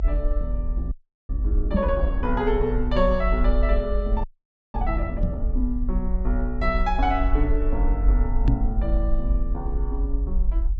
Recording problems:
treble missing; nothing above 7.8 kHz
rumble; below 50 Hz, SNR -1 dB
audio freezing; at 1 s and at 4 s for 0.5 s
microphone bump; at 1.5 s, at 5 s and at 8.5 s; peak +9 dB vs average level

